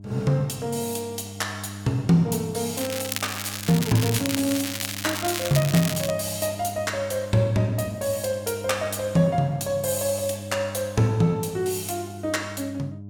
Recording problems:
mains hum; 50 Hz, harmonics up to 600 Hz, SNR 14 dB
crackling; from 3 to 6 s; loose cable, SNR 5 dB

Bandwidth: 17.5 kHz